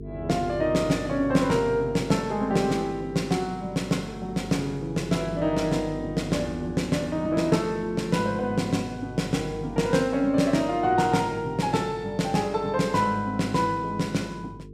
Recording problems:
electrical hum; 50 Hz, harmonics up to 450 Hz, SNR 15 dB

